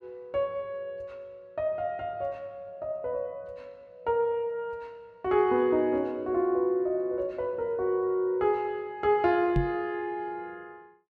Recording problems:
microphone thump; at 9.5 s; peak +4 dB vs average level

